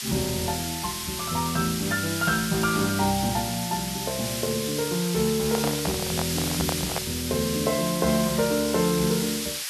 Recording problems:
hiss; slope +5 dB per octave, SNR 3 dB
microphone handling noise; from 5.5 to 7 s; peak +1 dB vs average level

